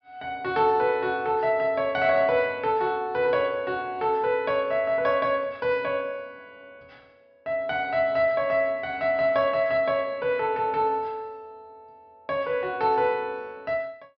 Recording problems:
treble missing; nothing above 5.5 kHz

